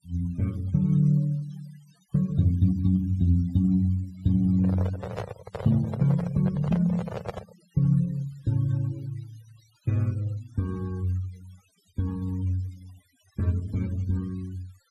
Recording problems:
denoising artefacts; signal-to-artefact ratio 25 dB
handling noise; from 4.5 to 7.5 s; peak -2 dB vs average level

